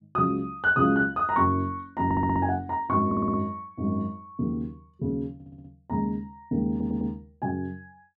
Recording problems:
stutter; 4 times, first at 2 s

